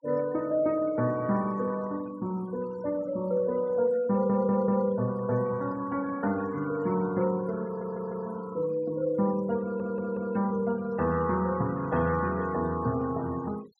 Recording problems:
noise reduction artefacts; signal-to-artefact ratio 22 dB
audio stuttering; at 4 s, at 7.5 s and at 9.5 s

